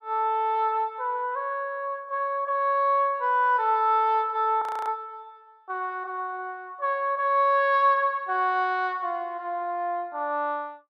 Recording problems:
frozen audio; at 4.5 s

